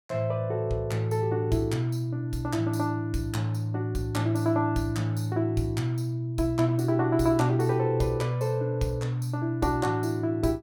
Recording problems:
none

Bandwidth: 17.5 kHz